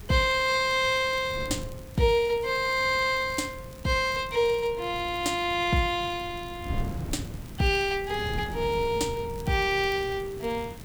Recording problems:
hiss; slope -2 dB per octave, SNR 25 dB
wind on the microphone; below 200 Hz, SNR 14 dB
crackling; vinyl, SNR 28 dB

